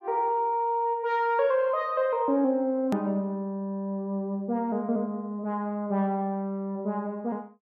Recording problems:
hard cut with a click; at 3 s

